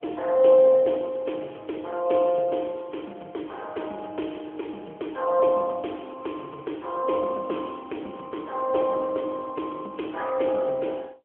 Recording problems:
telephone audio; 260 Hz to 3.2 kHz, AMR-NB

